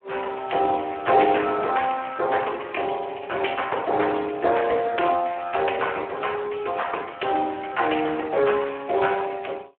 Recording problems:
phone line; 320 Hz to 3.1 kHz, Speex

